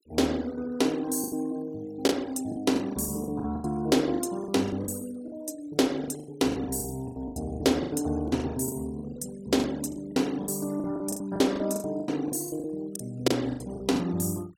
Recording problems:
noise reduction artefacts; signal-to-artefact ratio 22 dB
packet loss; 16% of the sound replaced, filled with the last packet

